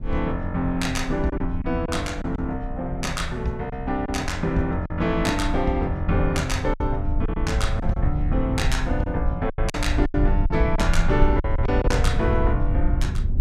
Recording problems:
low-frequency rumble; below 72 Hz, SNR 2 dB
packet loss; 6% of the sound replaced, filled with silence

